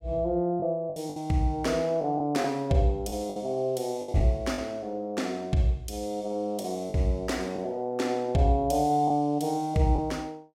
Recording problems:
packet loss; 5% of the sound replaced, filled with the last packet

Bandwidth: 16 kHz